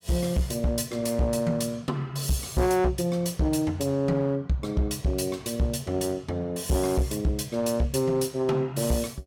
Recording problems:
distortion; hard clipping, uneven, signal-to-distortion ratio 12 dB

